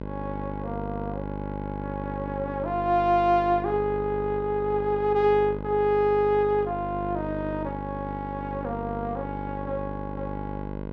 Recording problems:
electrical hum; 50 Hz, harmonics up to 1.5 kHz, SNR 8 dB

